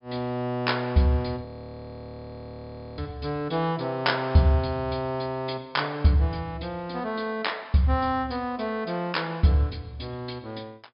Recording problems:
low-pass filter; nothing above 5.5 kHz
audio freezing; at 1.5 s for 1.5 s

